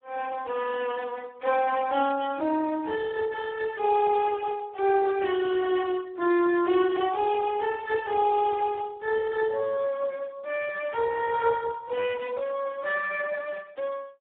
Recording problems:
phone line; 280 Hz to 2.9 kHz, Speex

